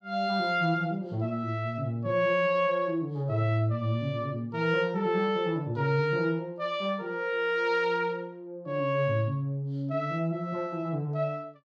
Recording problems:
none

